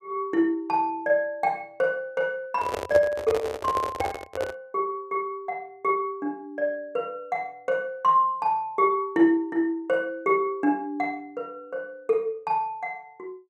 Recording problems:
handling noise; from 2.5 to 4.5 s; peak +1 dB vs average level

